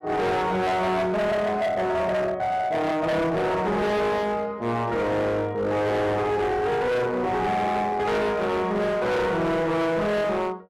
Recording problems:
distorted audio; hard clipping, signal-to-distortion ratio 6 dB

